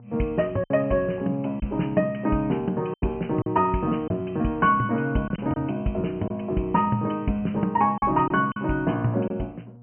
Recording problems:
treble missing; nothing above 3.1 kHz
electrical hum; 60 Hz, harmonics up to 720 Hz, SNR 20 dB
lost packets; 4% of the sound replaced, filled with silence

